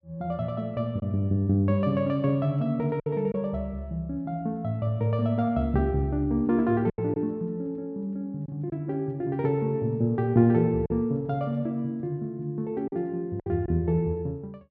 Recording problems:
packet loss; 3% of the sound replaced, filled with silence

